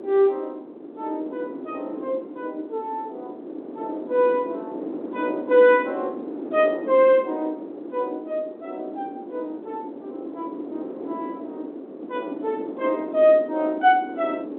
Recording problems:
phone line; 260 Hz to 3.7 kHz, G.711
wind noise; below 440 Hz, SNR 11 dB

